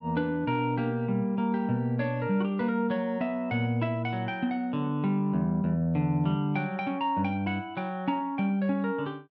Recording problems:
none

